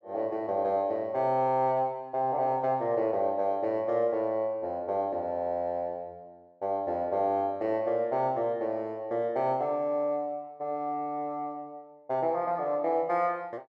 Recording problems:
none

